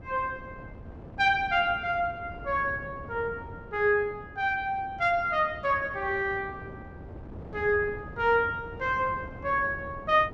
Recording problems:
wind on the microphone; below 390 Hz, SNR 16 dB

